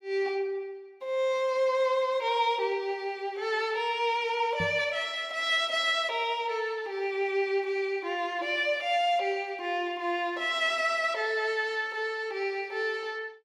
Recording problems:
microphone thump; at 4.5 s; peak -4 dB vs average level

